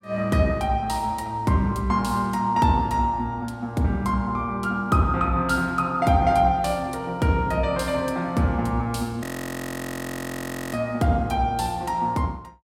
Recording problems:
frozen audio; at 9 s for 1.5 s

